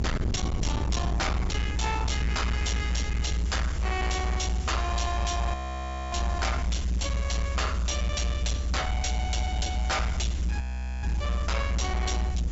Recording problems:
low-pass filter; nothing above 8 kHz
distorted audio; hard clipping, signal-to-distortion ratio 8 dB
hiss; slope 0 dB per octave, SNR 15 dB
low-frequency rumble; below 86 Hz, strongest tone 60 Hz, SNR -2 dB
frozen audio; at 5.5 s for 0.5 s and at 11 s

